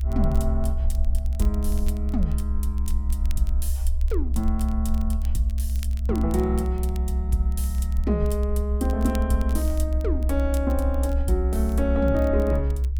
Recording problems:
low-frequency rumble; below 66 Hz, strongest tone 66 Hz, SNR -3 dB
crackle; vinyl, SNR 22 dB

